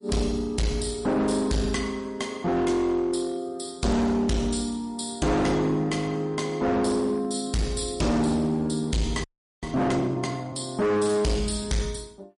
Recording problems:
lossy codec; MP3, log-spectral distance 4 dB, nothing above 10.4 kHz
distorted audio; hard clipping, uneven, signal-to-distortion ratio 6 dB
audio freezing; at 9 s

